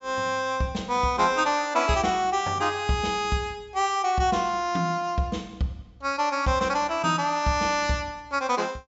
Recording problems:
low-pass filter; nothing above 8 kHz

